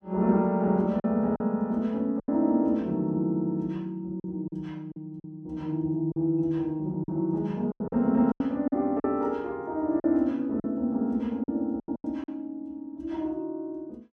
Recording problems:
packet loss; 7% of the sound replaced, filled with silence

